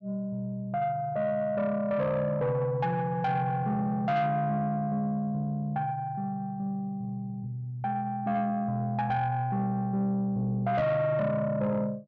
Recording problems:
distortion; soft clipping, signal-to-distortion ratio 12 dB

